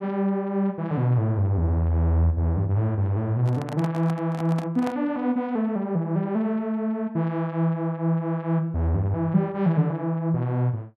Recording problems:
handling noise; from 3.5 to 5 s; peak -6 dB vs average level

